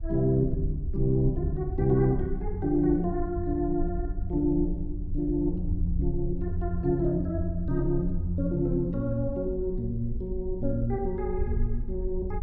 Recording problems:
wind on the microphone; below 60 Hz, SNR 7 dB

